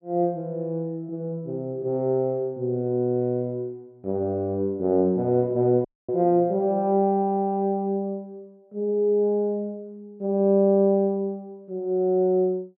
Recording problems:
dropout; at 6 s

